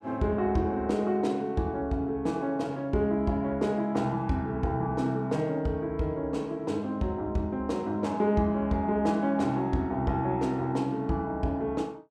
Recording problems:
none

